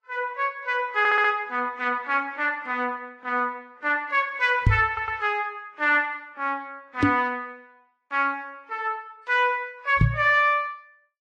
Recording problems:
lossy codec; AAC, then Vorbis, log-spectral distance 2 dB
stutter; at 1 s and at 5 s
knock on the microphone; at 4.5 s, at 7 s and at 10 s; peak +8 dB vs average level

